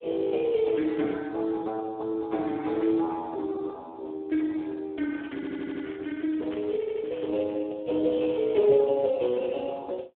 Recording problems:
phone line; 280 Hz to 2.6 kHz, Speex
crackle; from 5 to 7.5 s; loose cable, SNR 27 dB
audio stuttering; at 5.5 s and at 7 s

